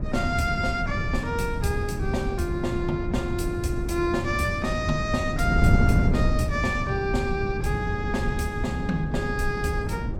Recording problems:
wind on the microphone; below 190 Hz, SNR 1 dB

